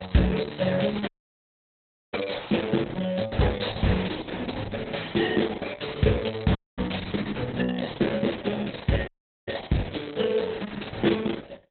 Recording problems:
lossy codec; Opus, log-spectral distance 8 dB, nothing above 4.1 kHz
dropout; at 1 s for 1 s, at 6.5 s and at 9 s

